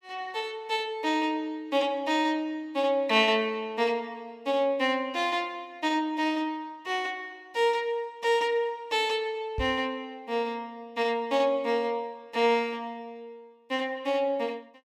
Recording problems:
microphone bump; at 9.5 s; peak -2 dB vs average level

